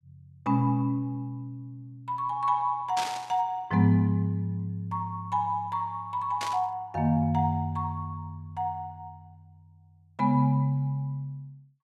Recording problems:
static burst; at 3 s and at 6.5 s; peak -2 dB vs average level

